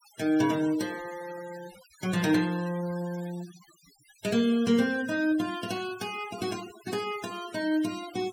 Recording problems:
denoising artefacts; signal-to-artefact ratio 17 dB

